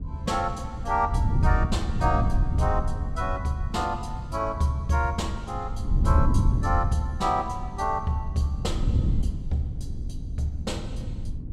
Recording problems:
wind noise; below 110 Hz, SNR 1 dB

